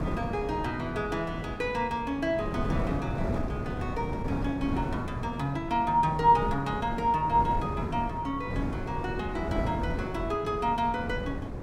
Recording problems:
wind on the microphone; below 350 Hz, SNR 5 dB

